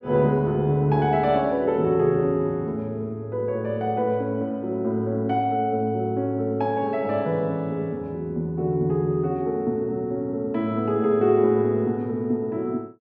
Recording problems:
none

